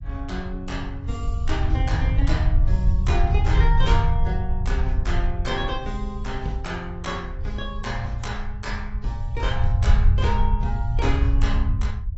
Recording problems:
lossy codec; AAC, log-spectral distance 2 dB, nothing above 7.8 kHz
low-frequency rumble; below 82 Hz, SNR -6 dB

